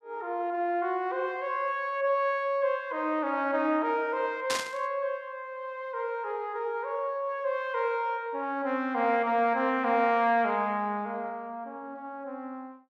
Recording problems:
static burst; at 4.5 s; peak +2 dB vs average level

